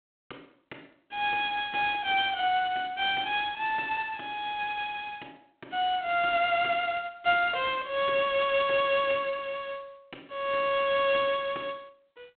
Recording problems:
phone line; 280 Hz to 3.5 kHz, G.726

